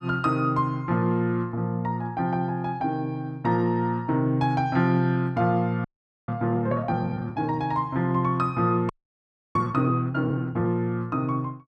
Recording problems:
frozen audio; at 6 s and at 9 s for 0.5 s

